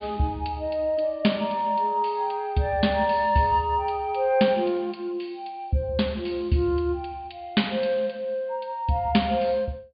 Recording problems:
treble cut off; nothing above 4.7 kHz

